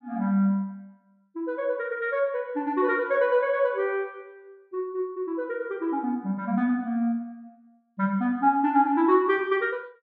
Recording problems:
none

